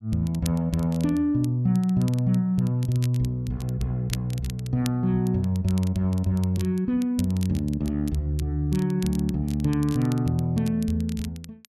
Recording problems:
crackle; vinyl, SNR 20 dB

